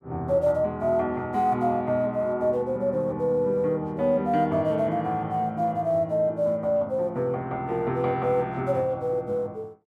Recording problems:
none

